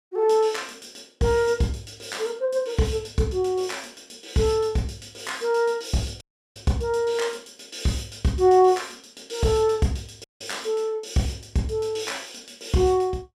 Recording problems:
audio cutting out; at 6 s and at 10 s

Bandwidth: 14.5 kHz